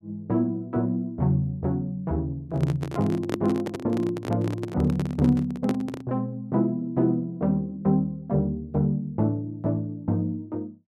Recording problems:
microphone handling noise; from 2.5 to 6 s; peak +3 dB vs average level

